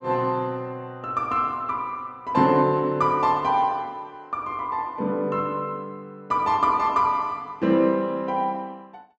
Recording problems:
none

